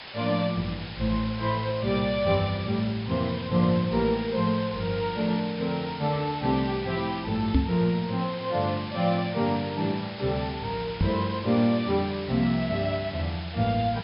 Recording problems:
treble cut off; nothing above 5.5 kHz
hiss; SNR 13 dB
microphone bump; at 7.5 s and at 11 s; peak +8 dB vs average level

